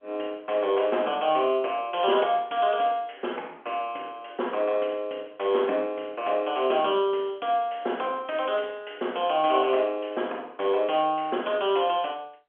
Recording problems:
telephone audio; 260 Hz to 3.3 kHz, G.711

